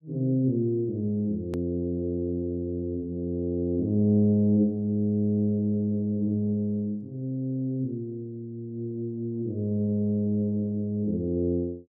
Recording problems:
hard cut with a click; at 1.5 s

